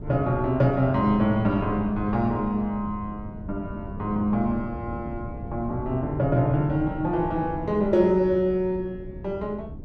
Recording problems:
wind on the microphone; below 210 Hz, SNR 12 dB

